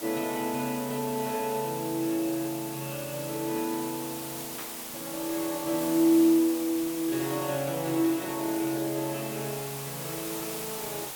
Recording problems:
hiss; slope -2 dB per octave, SNR 7 dB
static burst; at 4.5 s; peak -10 dB vs average level

